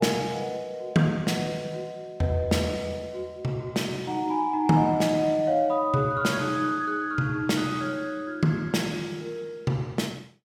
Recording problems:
none

